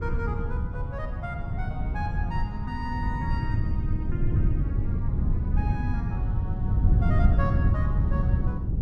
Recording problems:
wind on the microphone; below 120 Hz, SNR -10 dB

